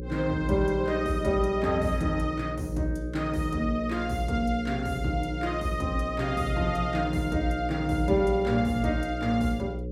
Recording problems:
electrical hum; 60 Hz, harmonics up to 540 Hz, SNR 8 dB

